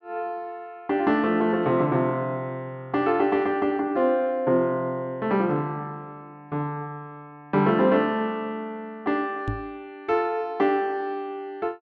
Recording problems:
microphone thump; at 9.5 s; peak 0 dB vs average level

